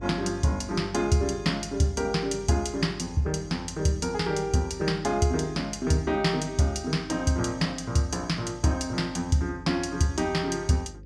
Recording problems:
hum; 50 Hz, harmonics up to 550 Hz, SNR 18 dB

